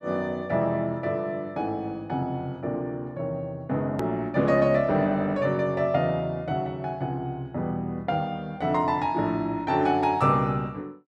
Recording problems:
edit click; at 4 s

